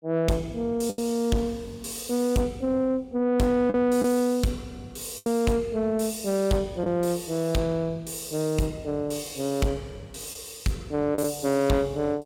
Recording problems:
distortion; soft clipping, signal-to-distortion ratio 11 dB
packet loss; 2% of the sound replaced, filled with the last packet

